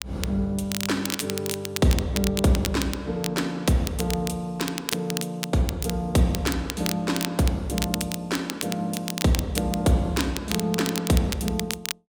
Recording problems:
crackle; vinyl, SNR 7 dB

